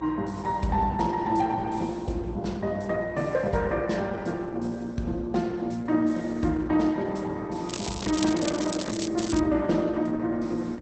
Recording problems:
lossy compression; Opus, log-spectral distance 4 dB, nothing above 8 kHz
hum; 60 Hz, harmonics up to 540 Hz, SNR 18 dB
crackling; from 7.5 to 9.5 s; loose cable, SNR 9 dB

